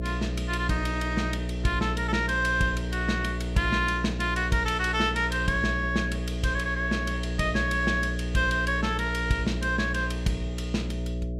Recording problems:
electrical hum; 60 Hz, harmonics up to 660 Hz, SNR 4 dB

